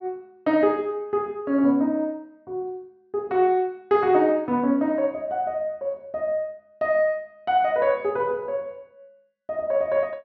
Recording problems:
treble missing; nothing above 6 kHz

